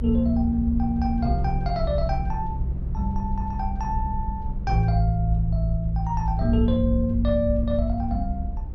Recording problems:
rumble; below 66 Hz, SNR 6 dB

